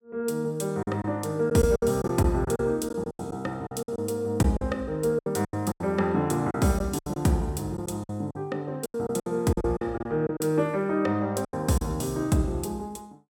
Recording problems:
packet loss; 11% of the sound replaced, filled with silence

